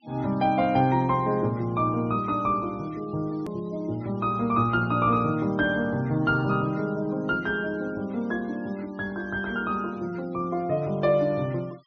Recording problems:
treble missing; nothing above 6.2 kHz
noise reduction artefacts; signal-to-artefact ratio 27 dB
click at an edit; at 3.5 s

